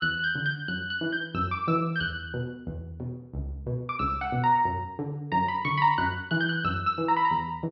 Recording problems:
treble cut off; nothing above 5.5 kHz

